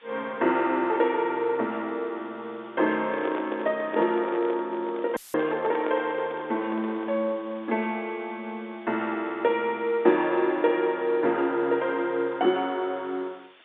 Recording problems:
phone line; 240 Hz to 3.8 kHz, G.711
background hiss; SNR 27 dB
microphone handling noise; from 3 to 7 s; peak -4 dB vs average level
dropout; at 5 s; filled with static

